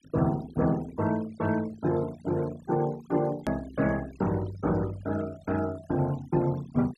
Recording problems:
denoising artefacts; signal-to-artefact ratio 18 dB
click at an edit; at 3.5 s

